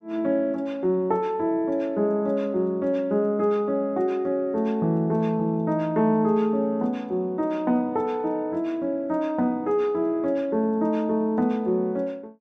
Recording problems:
none

